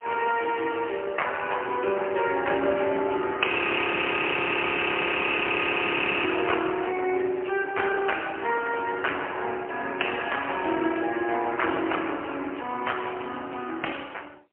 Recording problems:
telephone audio; 300 Hz to 3.1 kHz, AMR-NB, then MP3
audio freezing; at 3.5 s for 3 s

